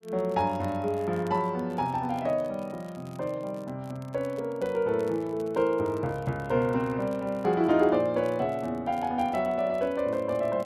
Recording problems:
crackling; vinyl, SNR 29 dB

